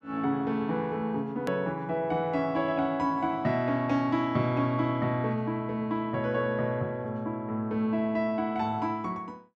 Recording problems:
hard cut with a click; at 1.5 s

